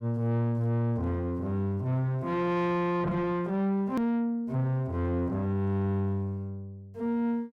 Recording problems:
distorted audio; soft clipping, signal-to-distortion ratio 11 dB
edit click; at 4 s

